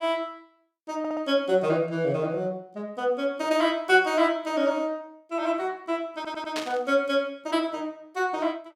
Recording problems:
stutter; at 1 s and at 6 s
burst of static; at 6.5 s; peak -2 dB vs average level

